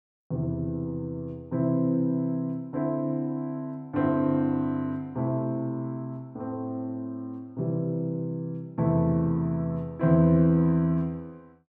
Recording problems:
none

